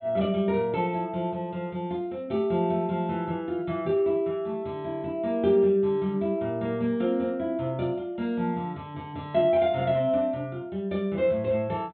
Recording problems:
low-pass filter; nothing above 4 kHz

